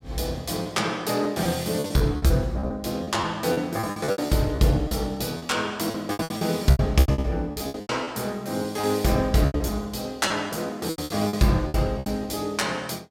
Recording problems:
packet loss; 15% of the sound replaced, filled with repeated pitch periods

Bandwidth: 16 kHz